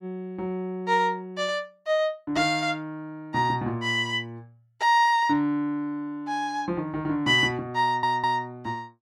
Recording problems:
stutter; at 8 s

